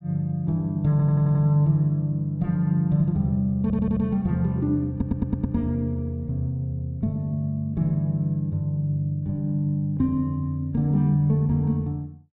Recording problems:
stutter; at 1 s, at 3.5 s and at 5 s

